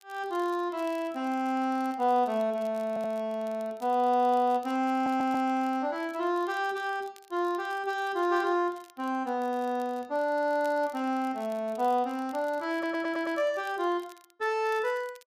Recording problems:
crackle; vinyl, SNR 28 dB
stutter; at 3 s, at 5 s and at 13 s

